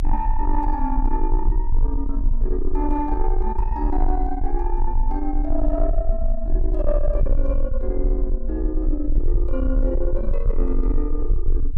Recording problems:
distorted audio; soft clipping, signal-to-distortion ratio 11 dB
rumble; below 40 Hz, strongest tone 24 Hz, SNR -2 dB

